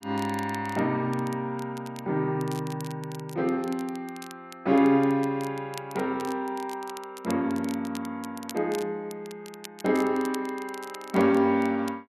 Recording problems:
crackle; vinyl, SNR 19 dB

